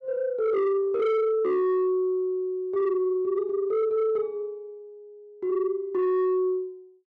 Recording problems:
distortion; soft clipping, signal-to-distortion ratio 11 dB

